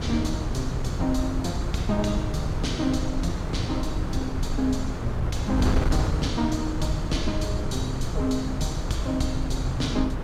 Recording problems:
wind noise; below 160 Hz, SNR 0 dB

